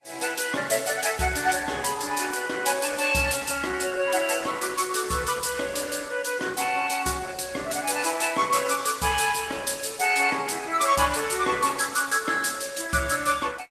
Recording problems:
lossy codec; Opus, then Vorbis, log-spectral distance 7 dB, nothing above 13.1 kHz

